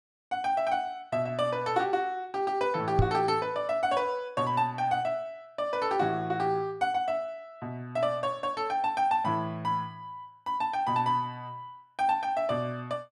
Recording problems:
microphone thump; at 3 s; peak +9 dB vs average level

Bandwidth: 12.5 kHz